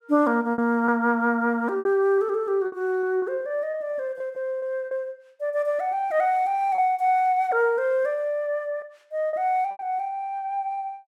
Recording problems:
lost packets; 6% of the sound replaced, filled with repeated pitch periods

